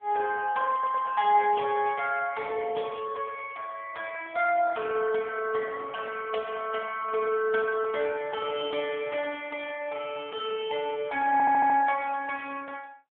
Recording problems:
telephone audio; 300 Hz to 3.3 kHz, AMR-NB
stutter; at 0.5 s and at 11 s
handling noise; from 5.5 to 9 s; peak -14 dB vs average level

